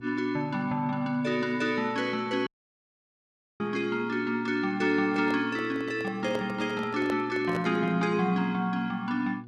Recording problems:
hum; 60 Hz, harmonics up to 720 Hz, SNR 19 dB
dropout; at 2.5 s for 1 s
microphone handling noise; from 5 to 8 s; peak -3 dB vs average level

